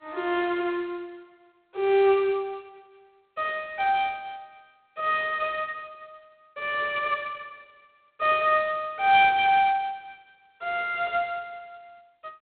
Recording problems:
telephone audio; 280 Hz to 3.9 kHz, G.726

